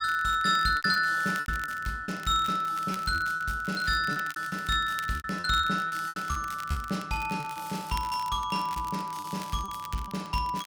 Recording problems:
crackling; vinyl, SNR 18 dB
packet loss; 11% of the sound replaced, filled with repeated pitch periods

